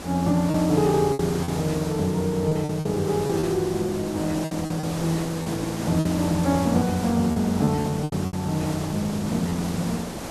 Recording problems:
hiss; SNR 8 dB
packet loss; 8% of the sound replaced, filled with repeated pitch periods

